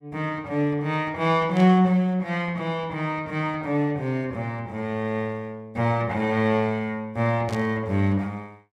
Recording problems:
static burst; at 1.5 s and at 7.5 s; peak -10 dB vs average level

